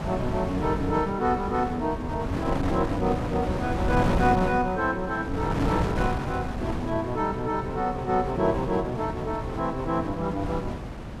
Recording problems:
wind noise; below 500 Hz, SNR 4 dB

